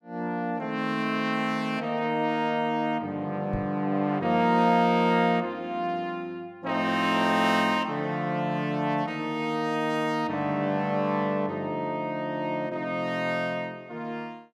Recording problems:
microphone thump; at 3.5 s; peak -3 dB vs average level

